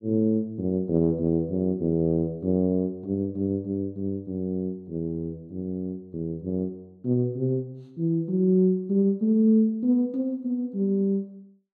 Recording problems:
none

